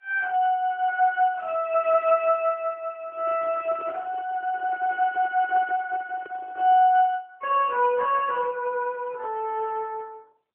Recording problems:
telephone audio; 240 Hz to 3.3 kHz, AMR-NB
handling noise; from 3 to 7 s; peak -12 dB vs average level

